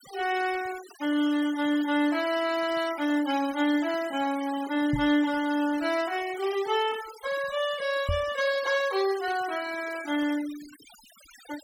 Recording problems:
noise reduction artefacts; signal-to-artefact ratio 16 dB
knock on the microphone; at 5 s and at 8 s; peak +1 dB vs average level

